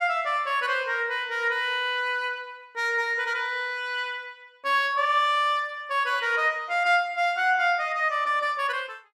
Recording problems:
none

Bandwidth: 14.5 kHz